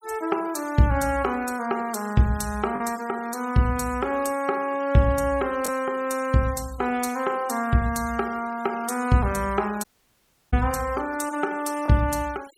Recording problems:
noise reduction artefacts; signal-to-artefact ratio 21 dB
lost packets; 0.6% of the sound replaced, filled with the last packet
audio cutting out; at 10 s for 0.5 s

